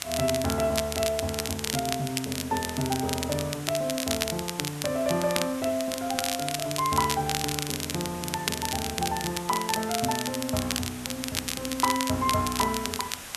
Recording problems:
hiss; slope -1 dB per octave, SNR 11 dB
crackling; vinyl, SNR 3 dB

